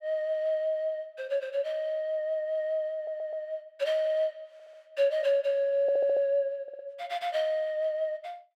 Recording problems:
stutter; 4 times, first at 3 s

